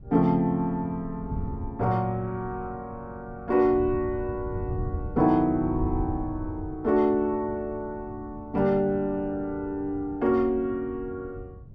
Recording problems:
wind on the microphone; below 120 Hz, SNR 12 dB

